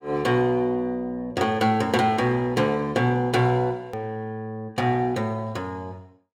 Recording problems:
edit click; at 4 s

